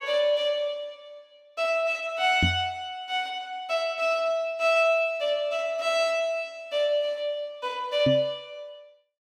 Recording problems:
knock on the microphone; at 2.5 s and at 8 s; peak +4 dB vs average level

